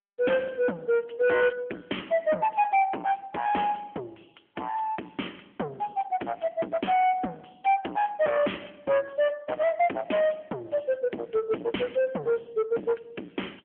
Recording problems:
phone line; 240 Hz to 3.3 kHz, AMR-NB
distorted audio; soft clipping, signal-to-distortion ratio 8 dB

